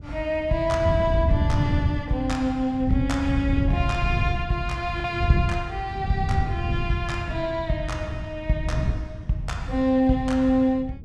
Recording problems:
wind noise; below 130 Hz, SNR 4 dB
lost packets; 0.4% of the sound replaced, filled with the last packet

